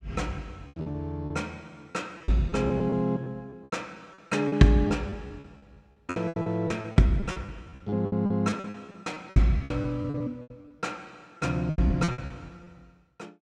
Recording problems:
packet loss; 17% of the sound replaced, filled with repeated pitch periods

